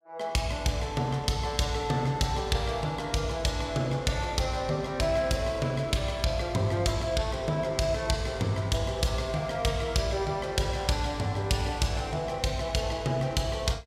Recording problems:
none

